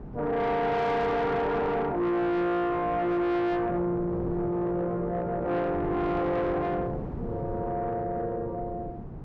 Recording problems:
distorted audio; soft clipping, signal-to-distortion ratio 7 dB
wind on the microphone; below 340 Hz, SNR 12 dB

